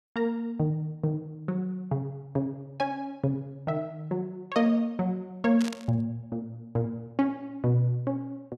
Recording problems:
burst of static; at 5.5 s; peak -5 dB vs average level

